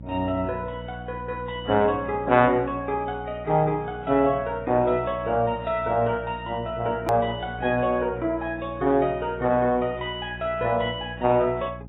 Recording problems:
lossy codec; AAC, log-spectral distance 2 dB, nothing above 17.7 kHz
hum; 60 Hz, harmonics up to 600 Hz, SNR 15 dB
edit click; at 7 s

